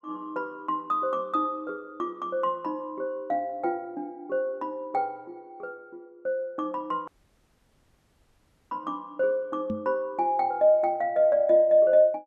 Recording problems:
dropout; at 7 s for 1.5 s
knock on the microphone; at 9.5 s; peak -2 dB vs average level

